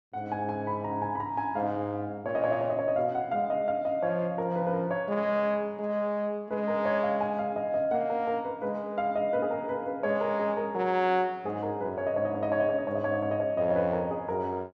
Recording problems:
none

